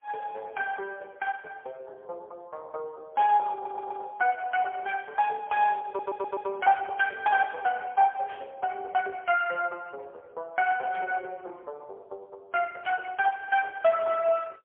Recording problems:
phone line; 370 Hz to 2.8 kHz, AMR-NB, then MP3
stutter; at 3.5 s and at 6 s
burst of static; at 8.5 s, at 11 s and at 13 s; peak -14 dB vs average level

